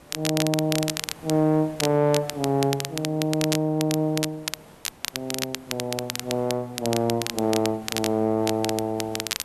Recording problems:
hiss; slope -5 dB per octave, SNR 22 dB
crackle; vinyl, SNR 6 dB

